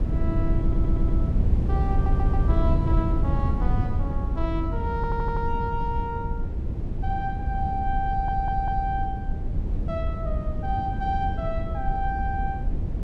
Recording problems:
wind on the microphone; below 100 Hz, SNR -4 dB
audio stuttering; 4 times, first at 0.5 s

